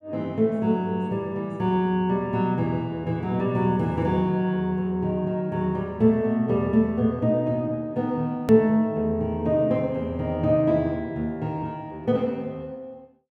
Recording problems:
click at an edit; at 8.5 s

